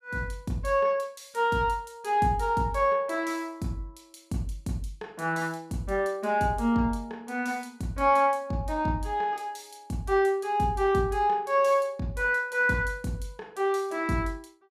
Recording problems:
none

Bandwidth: 15 kHz